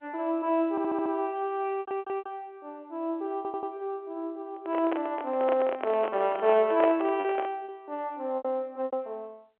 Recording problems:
phone line; 220 Hz to 3.3 kHz, G.711
packet loss; 4% of the sound replaced, filled with repeated pitch periods
audio stuttering; at 0.5 s, at 1.5 s and at 3.5 s
handling noise; from 4.5 to 7.5 s; peak +4 dB vs average level

